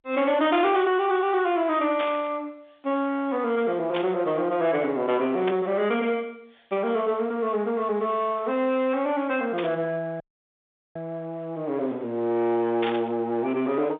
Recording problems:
phone line; 220 Hz to 3.7 kHz, G.711
distorted audio; soft clipping, signal-to-distortion ratio 13 dB
burst of static; 5 times, first at 2 s; peak -3 dB vs average level
audio cutting out; at 10 s for 1 s

